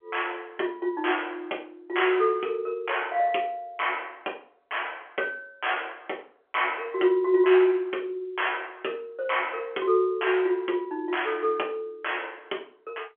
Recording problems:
telephone audio; 260 Hz to 3.3 kHz, G.711

